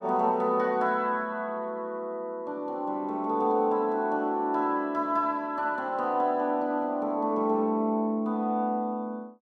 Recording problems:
none

